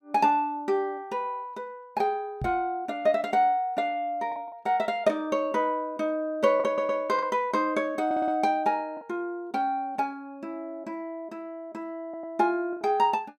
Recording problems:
packet loss; 2% of the sound replaced, filled with the last packet
knock on the microphone; at 2.5 s; peak -2 dB vs average level
stutter; at 6.5 s, at 8 s and at 12 s

